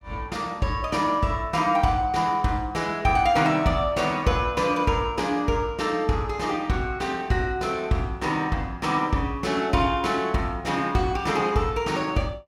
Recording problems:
none

